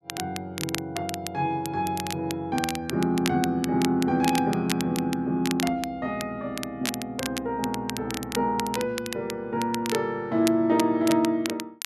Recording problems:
crackle; vinyl, SNR 9 dB

